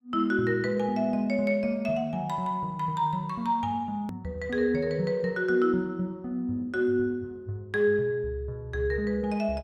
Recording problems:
click at an edit; at 4 s

